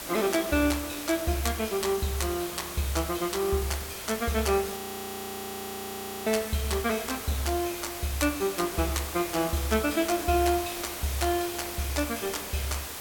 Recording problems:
background hiss; slope -2 dB per octave, SNR 7 dB
audio freezing; at 5 s for 1.5 s

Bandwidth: 17 kHz